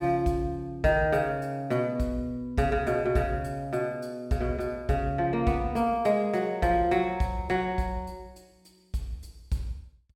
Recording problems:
none

